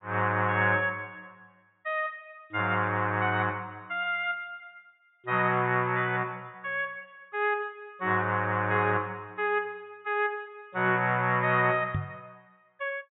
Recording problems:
treble missing; nothing above 4 kHz
microphone bump; at 12 s; peak 0 dB vs average level

